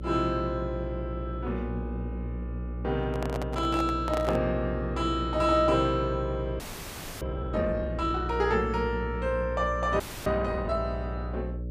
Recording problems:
hum; 60 Hz, harmonics up to 600 Hz, SNR 6 dB
handling noise; from 3 to 4.5 s; peak +1 dB vs average level
audio freezing; at 6.5 s for 0.5 s and at 10 s

